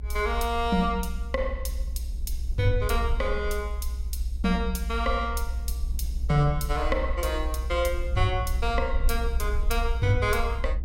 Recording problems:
rumble; below 62 Hz, SNR 3 dB

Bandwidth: 16.5 kHz